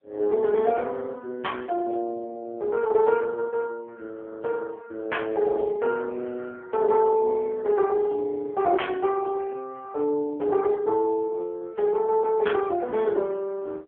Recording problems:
telephone audio; 300 Hz to 3.3 kHz, AMR-NB

